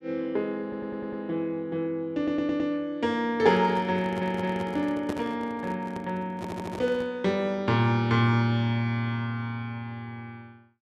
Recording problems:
audio stuttering; 4 times, first at 0.5 s
handling noise; from 3.5 to 7 s; peak -2 dB vs average level

